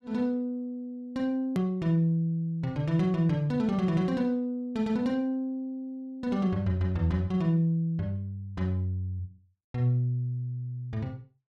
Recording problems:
hard cut with a click; at 1.5 s

